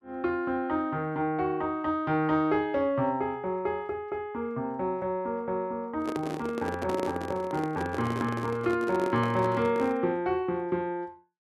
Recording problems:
handling noise; from 6 to 10 s; peak -1 dB vs average level

